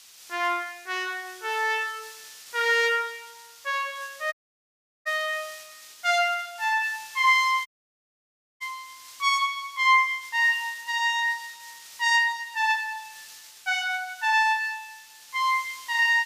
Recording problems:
hiss; slope +4 dB per octave, SNR 20 dB
dropout; at 4.5 s for 0.5 s and at 7.5 s for 1 s

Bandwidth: 15 kHz